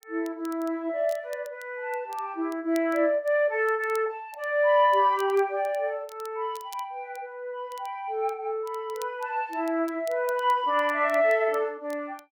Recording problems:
crackle; vinyl, SNR 25 dB

